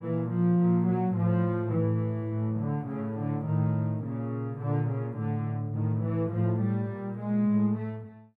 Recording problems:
none

